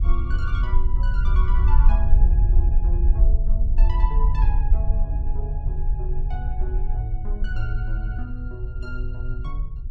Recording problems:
rumble; below 52 Hz, SNR -11 dB

